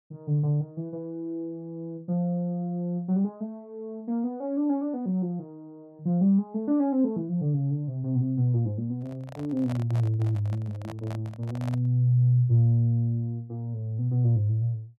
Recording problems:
handling noise; from 9 to 12 s; peak -9 dB vs average level

